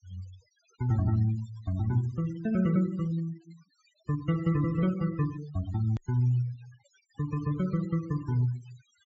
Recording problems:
low-pass filter; nothing above 8 kHz
denoising artefacts; signal-to-artefact ratio 20 dB
edit click; at 6 s

